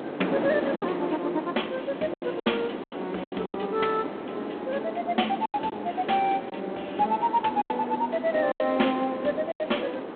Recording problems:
telephone audio; 240 Hz to 3.5 kHz, G.726
wind on the microphone; below 700 Hz, SNR 7 dB
lost packets; 8% of the sound replaced, filled with silence

